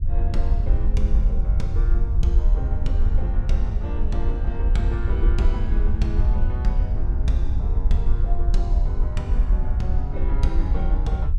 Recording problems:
low-frequency rumble; below 56 Hz, SNR -8 dB

